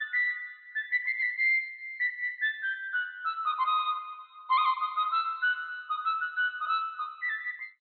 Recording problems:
lossy codec; MP2, log-spectral distance 2 dB, nothing above 4 kHz

